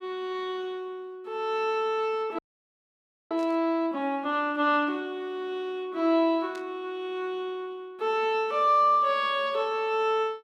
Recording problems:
frozen audio; at 2.5 s for 1 s
static burst; at 3.5 s and at 6.5 s; peak -15 dB vs average level

